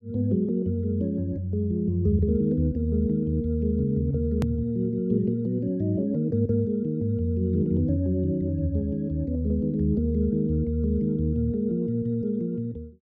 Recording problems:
edit click; at 4.5 s

